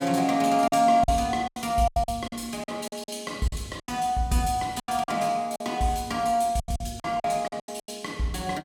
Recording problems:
packet loss; 13% of the sound replaced, filled with silence

